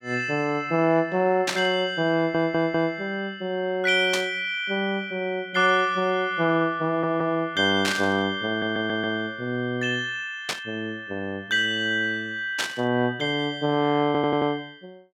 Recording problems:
static burst; 5 times, first at 1.5 s; peak +3 dB vs average level
stutter; 4 times, first at 2 s

